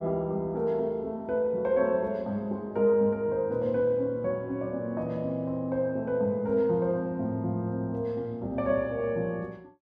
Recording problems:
none

